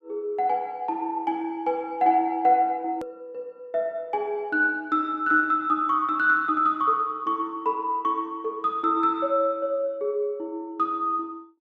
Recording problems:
click at an edit; at 3 s

